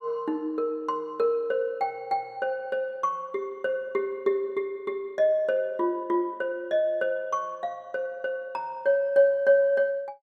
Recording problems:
none

